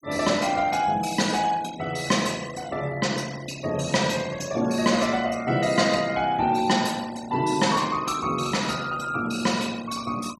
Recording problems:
denoising artefacts; signal-to-artefact ratio 18 dB

